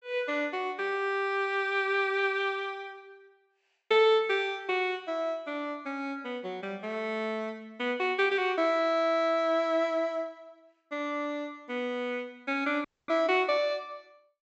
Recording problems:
treble missing; nothing above 7.9 kHz
audio cutting out; at 13 s

